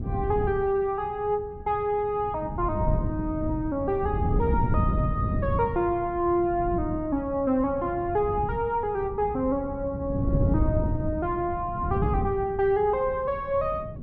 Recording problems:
wind noise; below 180 Hz, SNR 4 dB

